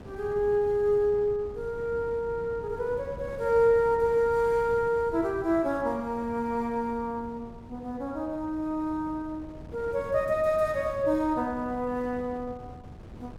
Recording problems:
wind on the microphone; below 320 Hz, SNR 17 dB

